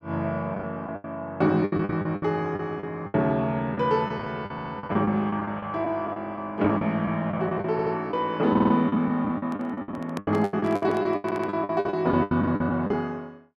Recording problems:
packet loss; 16% of the sound replaced, filled with the last packet
stutter; 4 times, first at 4.5 s
microphone handling noise; from 9.5 to 12 s; peak -4 dB vs average level

